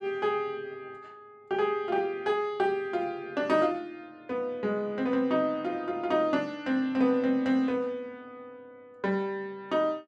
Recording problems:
none

